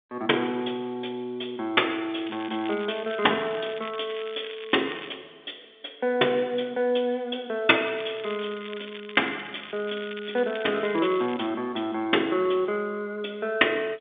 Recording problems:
phone line; 280 Hz to 3.6 kHz, G.711
crackle; from 2 to 5 s, from 8 to 10 s and from 10 to 11 s; loose cable, SNR 15 dB

